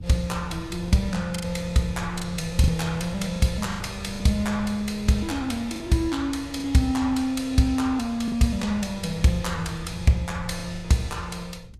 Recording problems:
codec artefacts; Vorbis, log-spectral distance 2 dB, nothing above 13.5 kHz
wind on the microphone; below 120 Hz, SNR 15 dB
lost packets; 5% of the sound replaced, filled with the last packet

